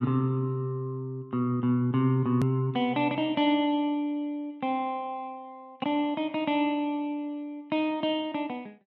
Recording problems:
hard cut with a click; at 2.5 s

